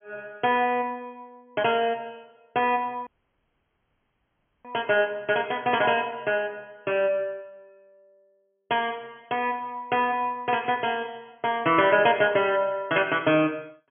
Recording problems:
treble missing; nothing above 3.3 kHz
audio cutting out; at 3 s for 1.5 s
burst of static; at 5.5 s and at 11 s; peak -15 dB vs average level

